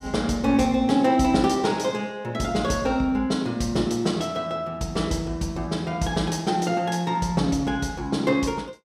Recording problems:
none

